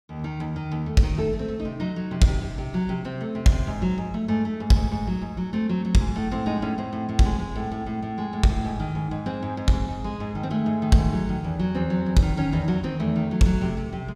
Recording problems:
none

